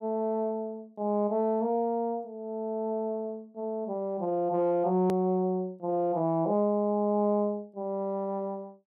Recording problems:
edit click; at 5 s

